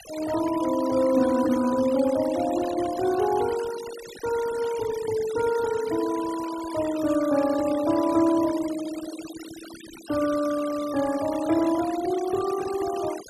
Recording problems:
denoising artefacts; signal-to-artefact ratio 15 dB

